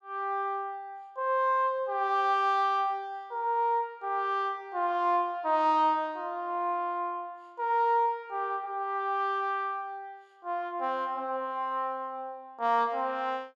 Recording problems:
none

